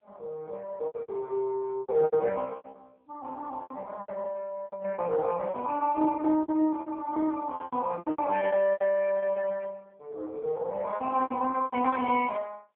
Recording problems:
phone line; 280 Hz to 3.1 kHz, AMR-NB
lost packets; 16% of the sound replaced, filled with repeated pitch periods

